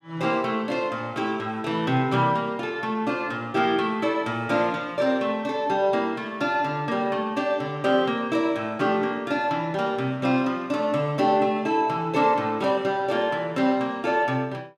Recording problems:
none

